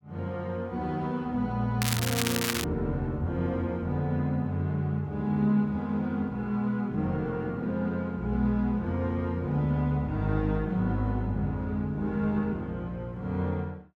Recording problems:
crackling; at 2 s; loose cable, SNR 1 dB

